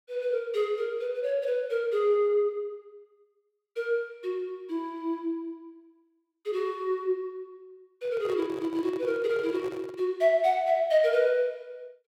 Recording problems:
microphone handling noise; from 8 to 10 s; peak -10 dB vs average level

